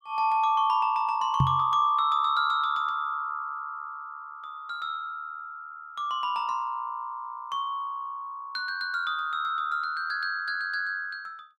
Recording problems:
microphone thump; at 1.5 s; peak +7 dB vs average level

